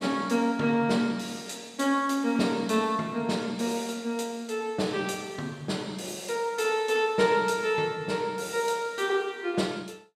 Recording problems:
none

